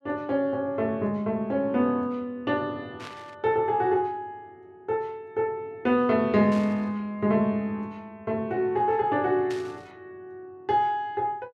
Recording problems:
burst of static; at 3 s, at 6.5 s and at 9.5 s; peak -11 dB vs average level

